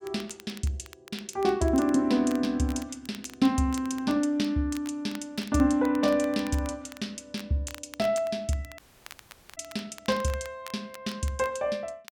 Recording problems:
crackling; vinyl, SNR 20 dB
dropout; at 9 s for 1 s

